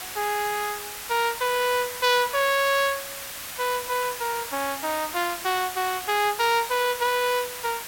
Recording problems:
background hiss; SNR 8 dB

